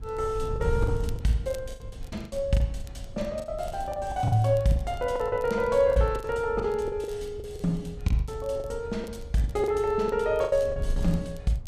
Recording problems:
wind on the microphone; below 94 Hz, SNR 11 dB
crackling; vinyl, SNR 28 dB
packet loss; 14% of the sound replaced, filled with the last packet

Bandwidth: 14.5 kHz